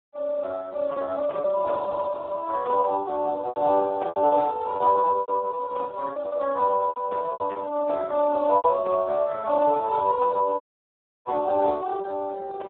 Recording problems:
telephone audio; 320 Hz to 2 kHz, Speex
packet loss; 8% of the sound replaced, filled with repeated pitch periods
dropout; at 11 s for 0.5 s

